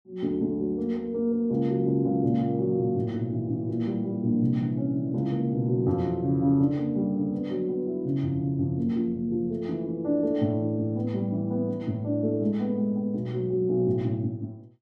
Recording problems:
none

